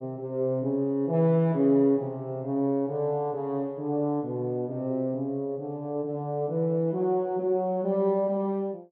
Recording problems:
none

